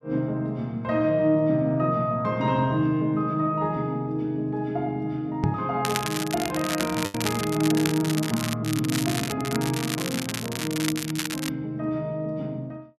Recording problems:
lost packets; 0.6% of the sound replaced, filled with the last packet
microphone thump; at 5.5 s; peak +5 dB vs average level
crackling; from 6 to 8.5 s and from 8.5 to 11 s; loose cable, SNR 6 dB

